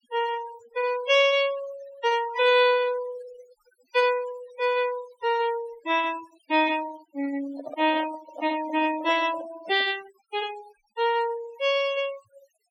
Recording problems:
denoising artefacts; signal-to-artefact ratio 17 dB
handling noise; from 7.5 to 10 s; peak -7 dB vs average level

